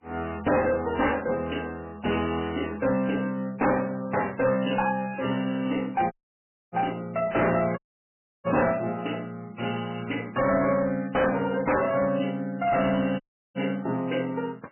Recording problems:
lossy compression; MP3, log-spectral distance 6 dB, nothing above 3 kHz
distorted audio; hard clipping, uneven, signal-to-distortion ratio 7 dB
dropout; at 6 s for 0.5 s, at 8 s for 0.5 s and at 13 s

